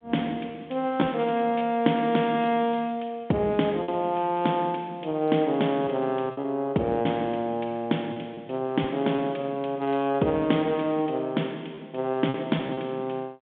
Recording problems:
telephone audio; 170 Hz to 3.6 kHz, G.726
packet loss; 5% of the sound replaced, filled with repeated pitch periods

